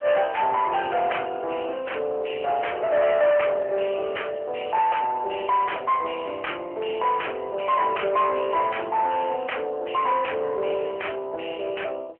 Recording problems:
phone line; 340 Hz to 3.1 kHz, AMR-NB
distorted audio; soft clipping, signal-to-distortion ratio 9 dB

